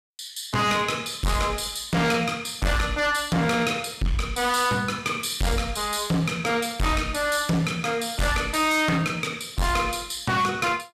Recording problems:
distortion; hard clipping, signal-to-distortion ratio 6 dB

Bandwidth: 14.5 kHz